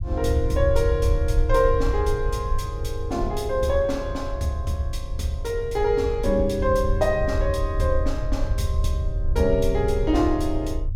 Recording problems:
low-frequency rumble; below 78 Hz, SNR 4 dB

